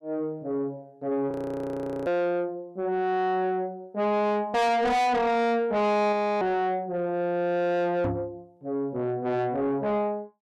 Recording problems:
distortion; soft clipping, signal-to-distortion ratio 6 dB
audio freezing; at 1.5 s for 1 s and at 6 s
knock on the microphone; at 8 s; peak +1 dB vs average level

